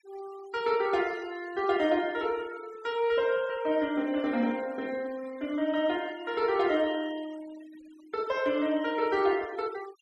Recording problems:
denoising artefacts; signal-to-artefact ratio 21 dB

